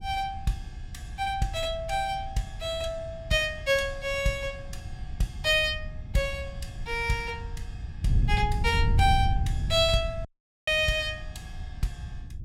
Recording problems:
wind noise; below 110 Hz, SNR 6 dB
dropout; at 10 s

